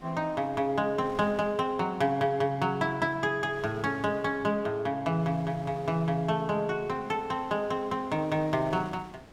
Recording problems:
wind on the microphone; below 1.4 kHz, SNR 21 dB

